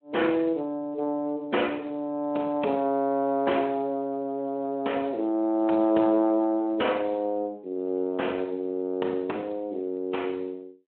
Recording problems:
phone line; 240 Hz to 3.4 kHz, Speex

